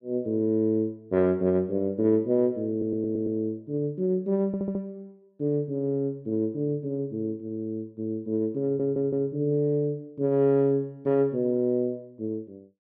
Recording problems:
audio stuttering; at 2.5 s, at 4.5 s and at 8.5 s

